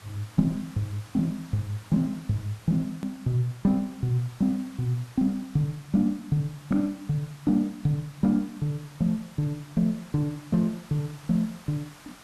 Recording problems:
hiss; SNR 22 dB
hard cut with a click; at 3 s

